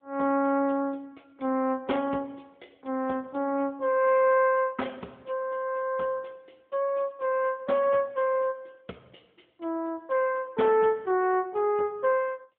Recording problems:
telephone audio; 220 Hz to 3.4 kHz, AMR-NB

